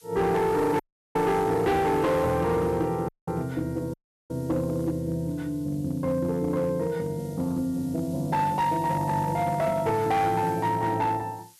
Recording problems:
distortion; hard clipping, signal-to-distortion ratio 11 dB
hiss; slope +4 dB per octave, SNR 24 dB
audio cutting out; at 1 s, at 3 s and at 4 s

